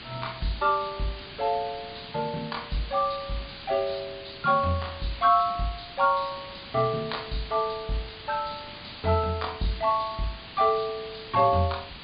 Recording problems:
treble cut off; nothing above 4.9 kHz
background hiss; SNR 13 dB

